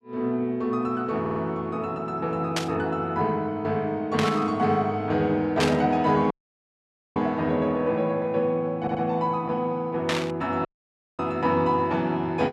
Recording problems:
audio stuttering; at 1 s and at 9 s
static burst; 4 times, first at 2.5 s; peak +3 dB vs average level
audio cutting out; at 6.5 s for 1 s and at 11 s for 0.5 s

